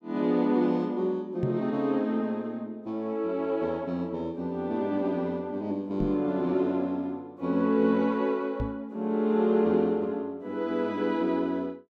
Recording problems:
microphone bump; at 1.5 s, at 6 s and at 8.5 s; peak +1 dB vs average level

